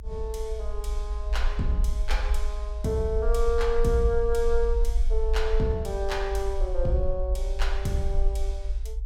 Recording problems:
rumble; below 54 Hz, SNR 1 dB

